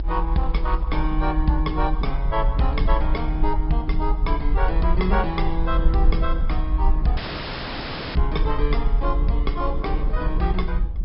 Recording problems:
treble cut off; nothing above 5.3 kHz
codec artefacts; Opus, log-spectral distance 2 dB
low-frequency rumble; below 52 Hz, SNR -1 dB
wind on the microphone; below 330 Hz, SNR 17 dB
audio cutting out; at 7 s for 1 s

